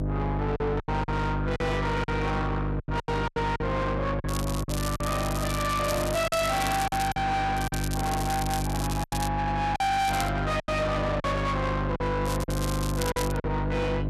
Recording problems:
distorted audio; soft clipping, signal-to-distortion ratio 7 dB
hum; 50 Hz, harmonics up to 1.4 kHz, SNR 2 dB
lost packets; 9% of the sound replaced, filled with silence
crackling; 4 times, first at 4.5 s; loose cable, SNR 10 dB

